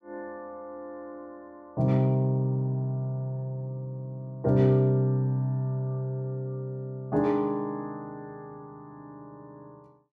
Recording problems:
none

